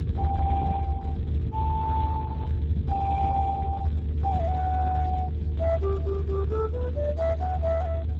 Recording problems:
lossy codec; Speex, log-spectral distance 2 dB
hum; 50 Hz, harmonics up to 600 Hz, SNR 12 dB
rumble; below 92 Hz, strongest tone 76 Hz, SNR -1 dB

